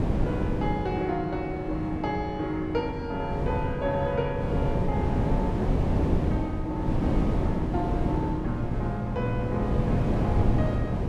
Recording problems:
wind on the microphone; below 290 Hz, SNR -2 dB

